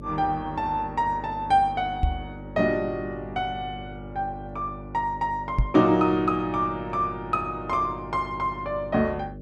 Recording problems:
electrical hum; 50 Hz, harmonics up to 600 Hz, SNR 14 dB
knock on the microphone; at 2 s and at 5.5 s; peak +6 dB vs average level

